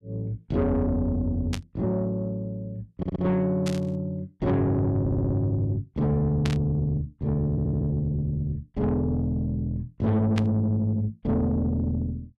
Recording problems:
distorted audio; soft clipping, signal-to-distortion ratio 10 dB
burst of static; 4 times, first at 1.5 s; peak -3 dB vs average level
audio stuttering; at 3 s, at 5 s and at 7.5 s

